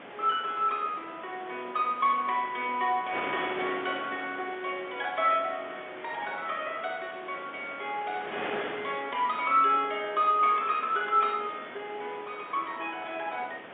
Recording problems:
telephone audio; 300 Hz to 3.6 kHz, G.711
wind noise; below 2.1 kHz, SNR 12 dB

